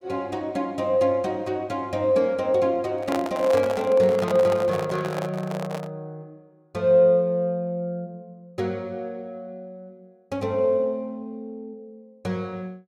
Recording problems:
microphone handling noise; from 3 to 6 s; peak -1 dB vs average level

